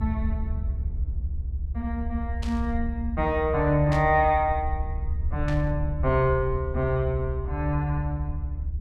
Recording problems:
rumble; below 74 Hz, SNR 5 dB
burst of static; at 2.5 s, at 4 s and at 5.5 s; peak -8 dB vs average level

